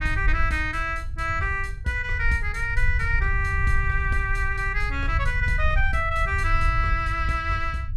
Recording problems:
rumble; below 72 Hz, SNR 3 dB

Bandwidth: 15 kHz